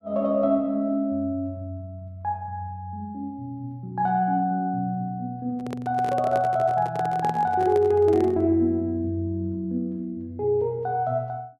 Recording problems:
handling noise; from 5.5 to 8.5 s; peak -4 dB vs average level

